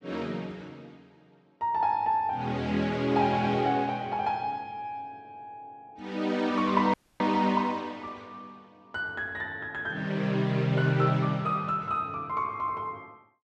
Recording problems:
dropout; at 7 s

